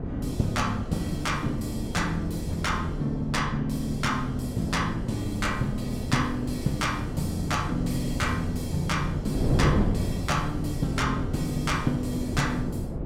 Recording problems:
wind noise; below 290 Hz, SNR 3 dB

